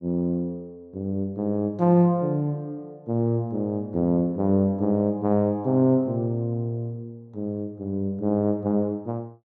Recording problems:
none

